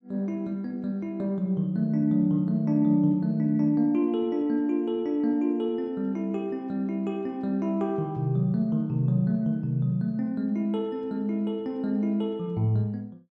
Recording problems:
none

